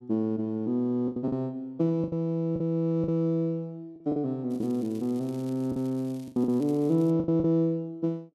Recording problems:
packet loss; 8% of the sound replaced, filled with the last packet
crackle; from 4.5 to 7 s; loose cable, SNR 27 dB

